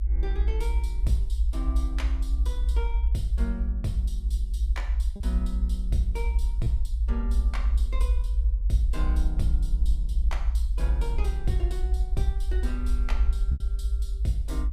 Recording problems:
rumble; below 58 Hz, SNR -10 dB
packet loss; 0.7% of the sound replaced, filled with repeated pitch periods

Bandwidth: 14.5 kHz